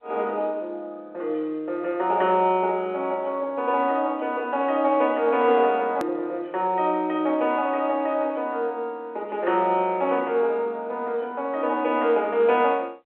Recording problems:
telephone audio; 320 Hz to 3.7 kHz, G.711
hard cut with a click; at 6 s

